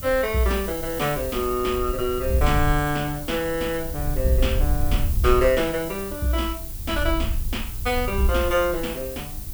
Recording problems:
hum; 50 Hz, harmonics up to 1.4 kHz, SNR 24 dB
hiss; SNR 10 dB
wind noise; below 72 Hz, SNR 6 dB

